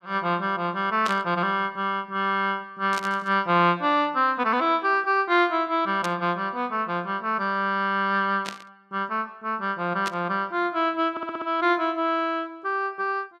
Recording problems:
static burst; 5 times, first at 1 s; peak -3 dB vs average level
stutter; at 11 s

